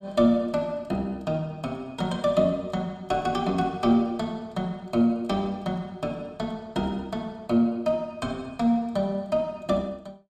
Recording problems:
none

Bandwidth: 14.5 kHz